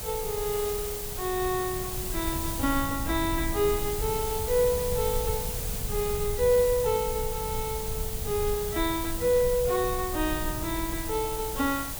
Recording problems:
hiss; SNR 5 dB
low-frequency rumble; below 100 Hz, SNR 9 dB

